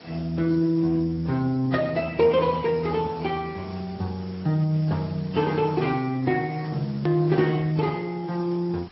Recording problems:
treble missing; nothing above 5.5 kHz
codec artefacts; Speex, then AAC, log-spectral distance 5 dB
hiss; slope -3 dB per octave, SNR 22 dB
click at an edit; at 7 s

